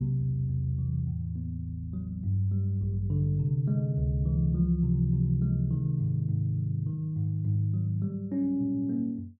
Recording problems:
none

